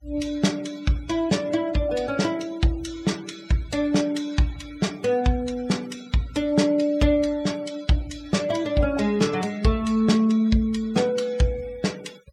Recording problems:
noise reduction artefacts; signal-to-artefact ratio 20 dB

